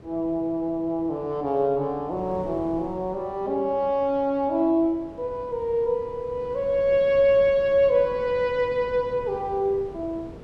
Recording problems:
wind noise; below 470 Hz, SNR 19 dB

